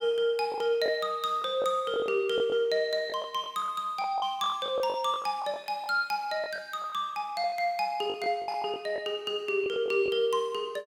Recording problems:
packet loss; 9% of the sound replaced, filled with the last packet

